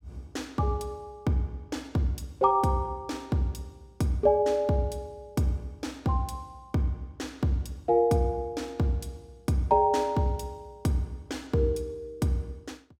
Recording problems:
none

